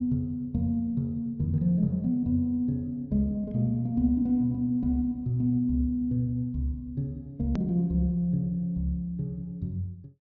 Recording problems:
treble missing; nothing above 6.7 kHz
hard cut with a click; at 7.5 s

